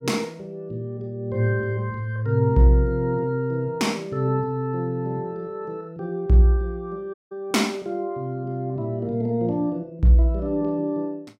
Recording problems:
dropout; at 7 s

